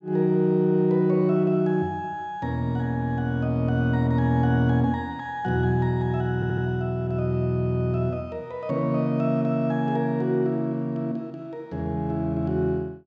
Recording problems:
stutter; at 6.5 s

